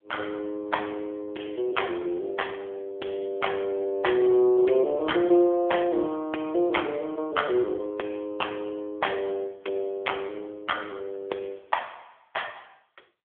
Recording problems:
telephone audio; 320 Hz to 3.4 kHz, AMR-NB

